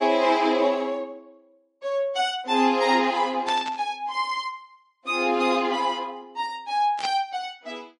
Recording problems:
lossy compression; MP3, log-spectral distance 2 dB, nothing above 10.4 kHz
burst of static; at 3.5 s and at 7 s; peak -4 dB vs average level

